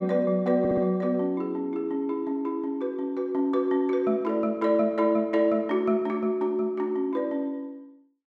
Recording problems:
stutter; at 0.5 s

